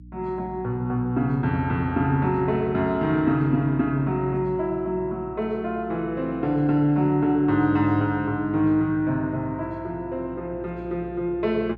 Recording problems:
hum; 60 Hz, harmonics up to 300 Hz, SNR 20 dB

